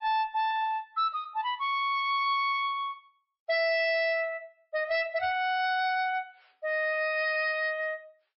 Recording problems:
lossy codec; MP3, log-spectral distance 2 dB, nothing above 4.6 kHz
distortion; hard clipping, signal-to-distortion ratio 10 dB

